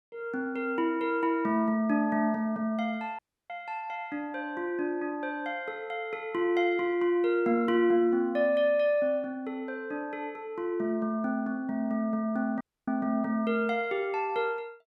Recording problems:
audio cutting out; at 3 s and at 13 s

